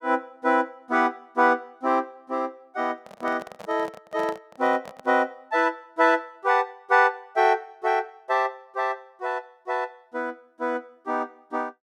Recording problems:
handling noise; from 3 to 5 s; peak -8 dB vs average level

